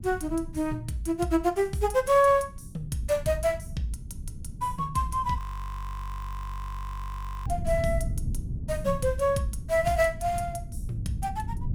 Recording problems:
low-frequency rumble; below 130 Hz, SNR 10 dB
audio freezing; at 5.5 s for 2 s

